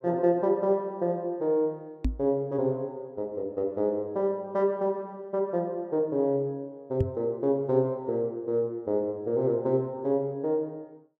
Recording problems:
knock on the microphone; at 2 s and at 7 s; peak +4 dB vs average level

